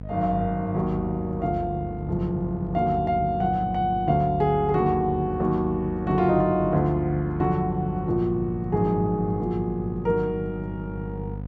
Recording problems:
electrical hum; 50 Hz, harmonics up to 750 Hz, SNR 11 dB

